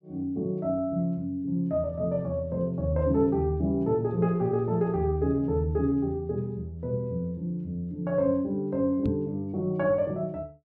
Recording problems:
microphone bump; at 9 s; peak +1 dB vs average level

